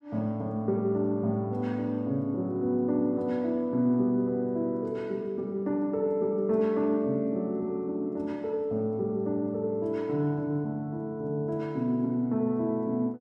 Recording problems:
none

